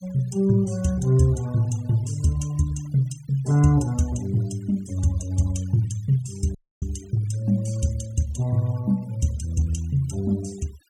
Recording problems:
noise reduction artefacts; signal-to-artefact ratio 22 dB
dropout; at 6.5 s

